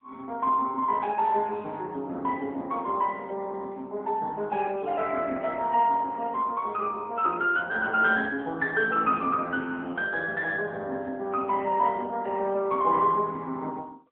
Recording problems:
telephone audio; 240 Hz to 3.3 kHz, AMR-NB

